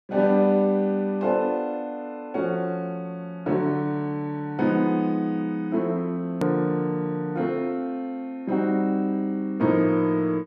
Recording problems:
edit click; at 6.5 s

